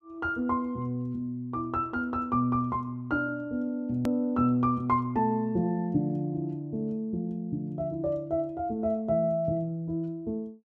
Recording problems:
hard cut with a click; at 4 s

